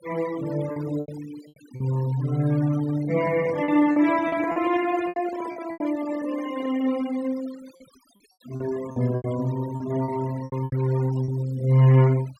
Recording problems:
denoising artefacts; signal-to-artefact ratio 20 dB
lost packets; 9% of the sound replaced, filled with repeated pitch periods
microphone handling noise; from 3 to 7 s; peak -9 dB vs average level

